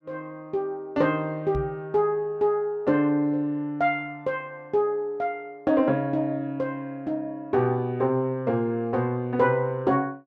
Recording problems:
microphone bump; at 1.5 s; peak -2 dB vs average level

